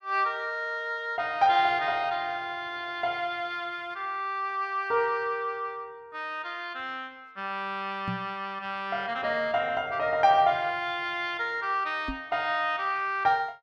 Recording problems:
microphone bump; at 8 s and at 12 s; peak -1 dB vs average level

